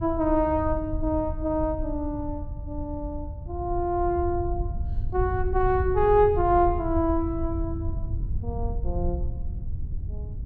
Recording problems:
low-frequency rumble; below 86 Hz, SNR 6 dB

